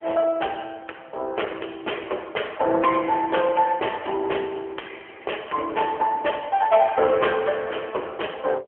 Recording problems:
phone line; 300 Hz to 3.2 kHz, AMR-NB

